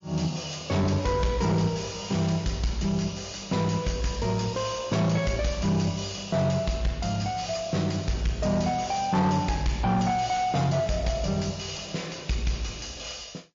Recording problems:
codec artefacts; MP3, log-spectral distance 7 dB, nothing above 6.5 kHz
distorted audio; soft clipping, signal-to-distortion ratio 10 dB

